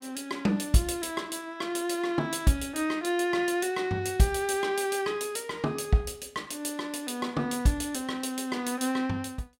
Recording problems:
none

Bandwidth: 16 kHz